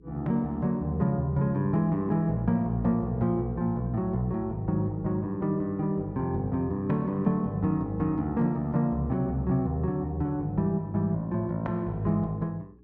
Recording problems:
hum; 60 Hz, harmonics up to 420 Hz, SNR 27 dB

